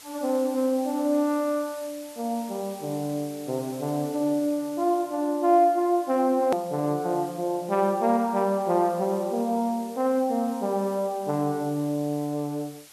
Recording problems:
hiss; slope +1 dB per octave, SNR 20 dB
click at an edit; at 6.5 s

